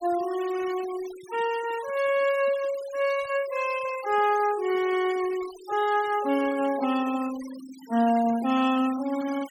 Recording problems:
noise reduction artefacts; signal-to-artefact ratio 16 dB

